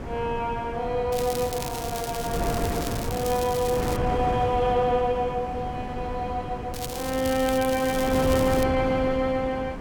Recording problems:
wind on the microphone; below 520 Hz, SNR 6 dB
crackling; from 1 to 4 s and from 6.5 to 8.5 s; loose cable, SNR 10 dB

